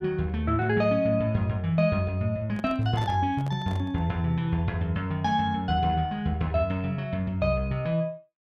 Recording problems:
microphone handling noise; from 2.5 to 4 s; peak -10 dB vs average level

